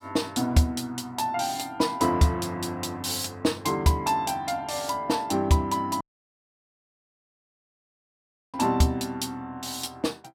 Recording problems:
audio cutting out; at 6 s for 2.5 s

